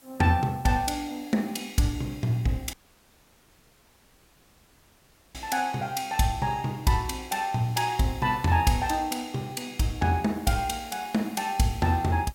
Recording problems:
background hiss; slope -2 dB per octave, SNR 25 dB
audio cutting out; at 2.5 s for 2.5 s

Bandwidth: 16.5 kHz